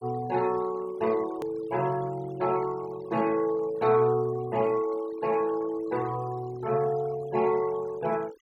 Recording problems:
denoising artefacts; signal-to-artefact ratio 20 dB
hard cut with a click; at 1.5 s

